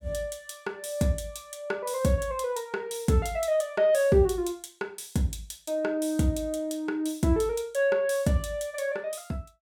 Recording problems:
none

